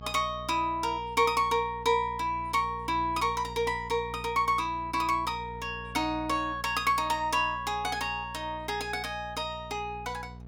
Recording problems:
hum; 60 Hz, harmonics up to 900 Hz, SNR 16 dB

